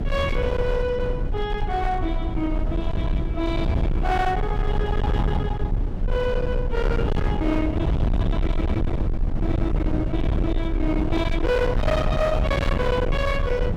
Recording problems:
distorted audio; hard clipping, uneven, signal-to-distortion ratio 6 dB
rumble; below 160 Hz, SNR 0 dB

